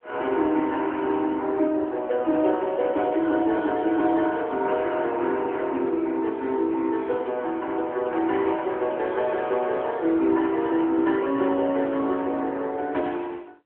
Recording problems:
phone line; 240 Hz to 3.3 kHz, AMR-NB

